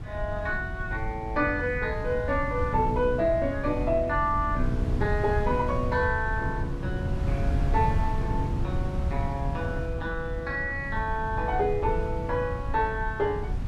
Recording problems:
wind on the microphone; below 120 Hz, SNR 4 dB

